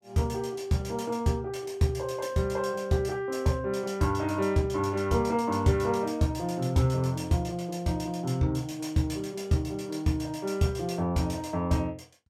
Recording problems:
none

